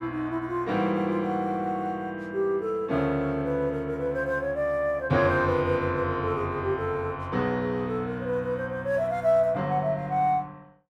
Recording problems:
none

